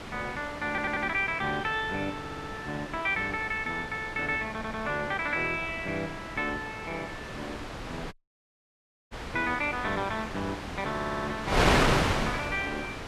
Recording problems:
wind on the microphone; below 2.1 kHz, SNR 2 dB
audio stuttering; 4 times, first at 0.5 s
dropout; at 8 s for 1 s

